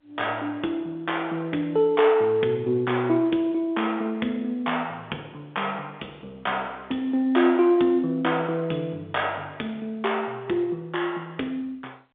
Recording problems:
telephone audio; 220 Hz to 3.6 kHz, G.711

